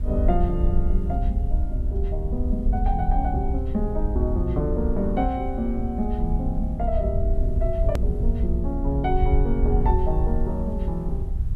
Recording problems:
background hiss; slope -7 dB per octave, SNR 29 dB
low-frequency rumble; below 64 Hz, SNR -2 dB
click at an edit; at 8 s

